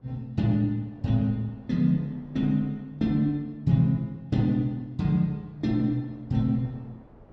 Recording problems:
wind on the microphone; below 540 Hz, SNR 27 dB

